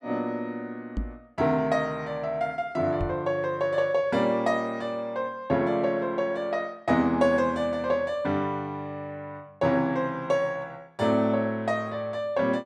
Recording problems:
knock on the microphone; at 1 s and at 3 s; peak 0 dB vs average level

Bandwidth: 12.5 kHz